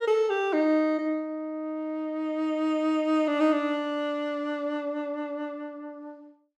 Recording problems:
none

